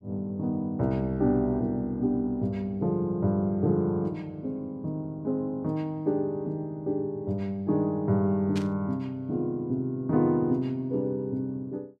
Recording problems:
static burst; at 8.5 s; peak -6 dB vs average level

